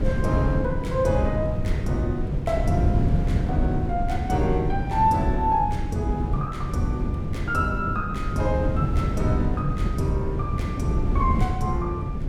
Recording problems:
wind noise; below 160 Hz, SNR 0 dB

